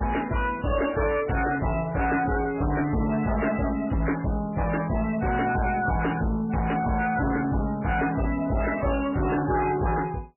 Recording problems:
lossy compression; MP3, log-spectral distance 6 dB, nothing above 2.7 kHz
distorted audio; hard clipping, signal-to-distortion ratio 8 dB

